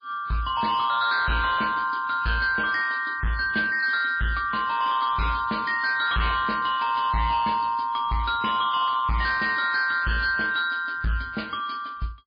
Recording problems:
lossy codec; MP3, log-spectral distance 5 dB, nothing above 4.5 kHz
distortion; hard clipping, signal-to-distortion ratio 11 dB

